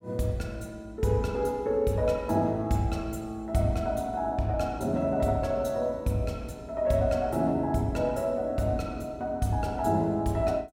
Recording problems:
none

